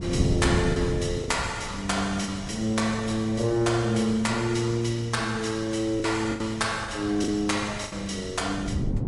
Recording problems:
lossy codec; MP3, log-spectral distance 3 dB, nothing above 11 kHz
wind noise; below 210 Hz, SNR 9 dB
lost packets; 5% of the sound replaced, filled with the last packet

